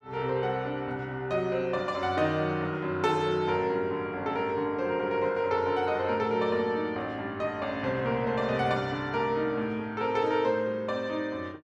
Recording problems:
none

